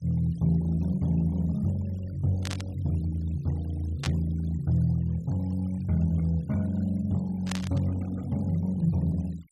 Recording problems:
noise reduction artefacts; signal-to-artefact ratio 27 dB
static burst; at 2.5 s, at 4 s and at 7.5 s; peak -2 dB vs average level

